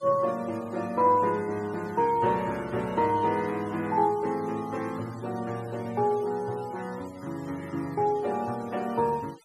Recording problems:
noise reduction artefacts; signal-to-artefact ratio 22 dB

